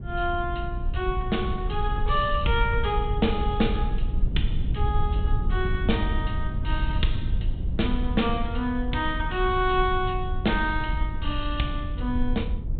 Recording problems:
low-pass filter; nothing above 4 kHz
low-frequency rumble; below 78 Hz, SNR 2 dB

